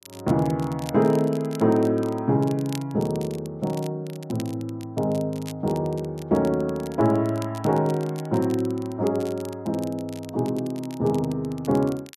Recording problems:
crackling; vinyl, SNR 21 dB

